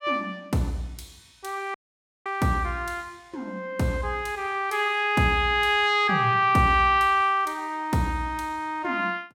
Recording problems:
audio cutting out; at 1.5 s for 0.5 s

